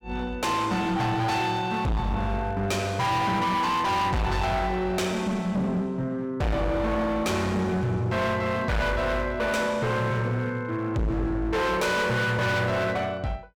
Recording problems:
distortion; hard clipping, uneven, signal-to-distortion ratio 6 dB

